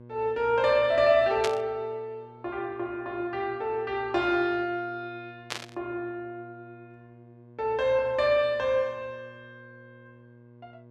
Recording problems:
hum; 60 Hz, harmonics up to 1.1 kHz, SNR 23 dB
static burst; at 1.5 s and at 5.5 s; peak 0 dB vs average level

